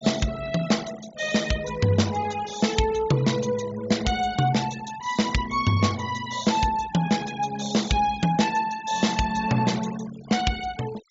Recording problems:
treble cut off; nothing above 7.4 kHz
noise reduction artefacts; signal-to-artefact ratio 16 dB

